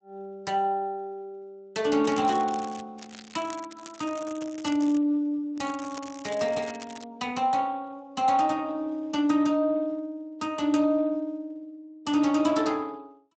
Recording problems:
codec artefacts; Speex, log-spectral distance 4 dB, nothing above 8 kHz
crackling; at 2 s, from 3 to 5 s and from 5.5 to 7 s; loose cable, SNR 18 dB

